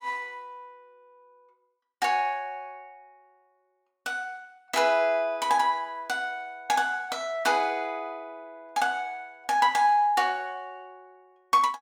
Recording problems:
none

